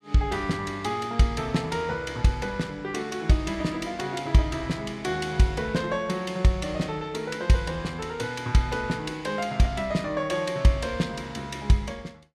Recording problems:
none

